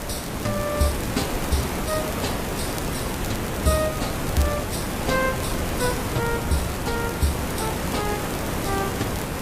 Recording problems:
lossy codec; AAC, log-spectral distance 9 dB, nothing above 14.3 kHz
hum; 50 Hz, harmonics up to 450 Hz, SNR 21 dB
hiss; slope -6 dB per octave, SNR -1 dB
rumble; below 120 Hz, SNR 11 dB
crackling; vinyl, SNR 13 dB

